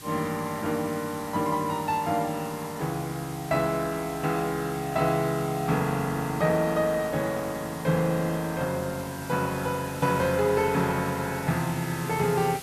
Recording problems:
hiss; slope -1 dB per octave, SNR 15 dB

